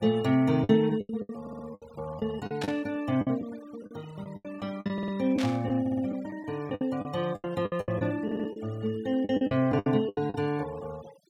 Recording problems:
noise reduction artefacts; signal-to-artefact ratio 21 dB
lost packets; 13% of the sound replaced, filled with the last packet
audio stuttering; 4 times, first at 1.5 s
static burst; at 2.5 s and at 5.5 s; peak -3 dB vs average level

